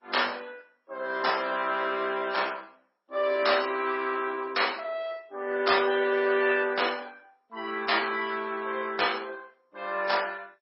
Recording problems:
lossy compression; MP3, then MP2, log-spectral distance 5 dB, nothing above 5.3 kHz

